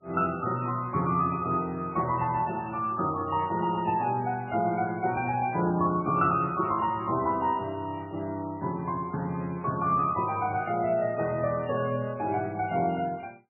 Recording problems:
lossy codec; MP3, log-spectral distance 3 dB, nothing above 2.4 kHz

